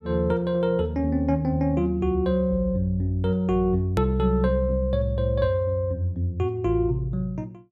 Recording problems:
click at an edit; at 4 s

